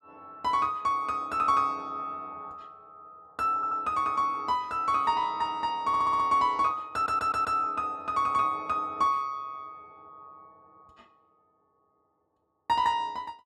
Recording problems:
stutter; at 3.5 s, at 6 s and at 7 s

